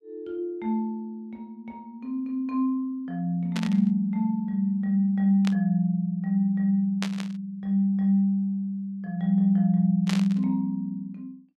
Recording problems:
static burst; 4 times, first at 3.5 s; peak -3 dB vs average level

